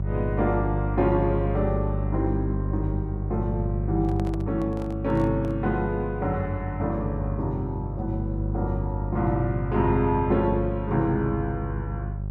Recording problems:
hum; 50 Hz, harmonics up to 400 Hz, SNR 3 dB
handling noise; from 4 to 5.5 s; peak -8 dB vs average level

